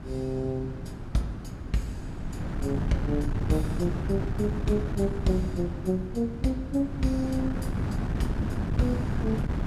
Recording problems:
wind noise; below 230 Hz, SNR 2 dB

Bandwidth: 14 kHz